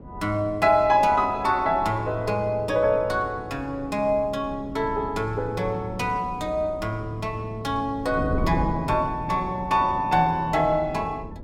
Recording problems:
wind noise; below 270 Hz, SNR 13 dB

